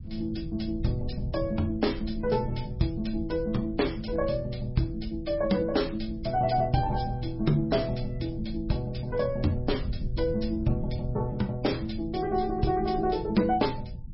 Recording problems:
lossy codec; MP3, log-spectral distance 3 dB, nothing above 5.3 kHz
low-frequency rumble; below 100 Hz, SNR 10 dB

